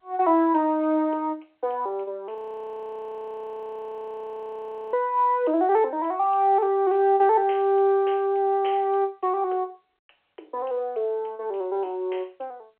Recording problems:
phone line; 280 Hz to 3.5 kHz, G.711
audio freezing; at 2.5 s for 2.5 s

